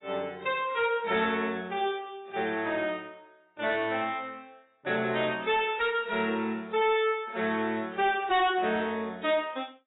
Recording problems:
lossy compression; AAC, log-spectral distance 3 dB, nothing above 3.8 kHz
distorted audio; soft clipping, signal-to-distortion ratio 11 dB

